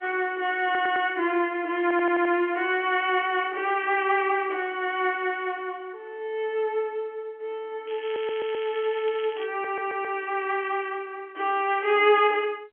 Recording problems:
phone line; 260 Hz to 3.3 kHz, G.711
stutter; 4 times, first at 0.5 s
crackling; from 8 to 9.5 s; loose cable, SNR 17 dB

